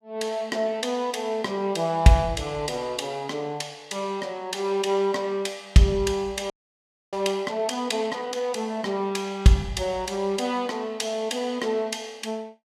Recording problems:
frozen audio; at 6.5 s for 0.5 s

